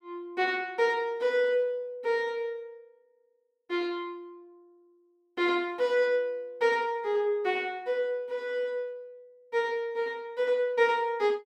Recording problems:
none

